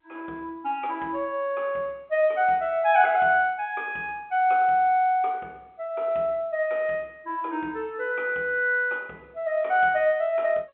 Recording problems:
phone line; 280 Hz to 3.7 kHz, G.711

